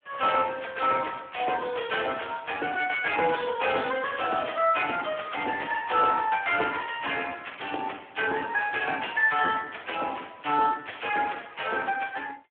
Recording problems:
phone line; 220 Hz to 3.5 kHz, Speex

